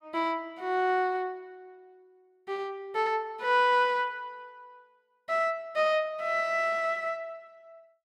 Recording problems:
none

